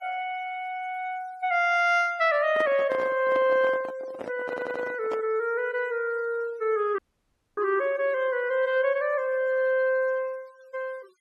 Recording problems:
denoising artefacts; signal-to-artefact ratio 27 dB
microphone handling noise; from 2.5 to 5.5 s; peak -5 dB vs average level
audio stuttering; at 4.5 s
dropout; at 7 s for 0.5 s

